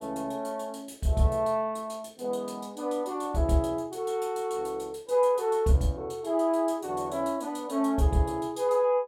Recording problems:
none

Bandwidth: 16.5 kHz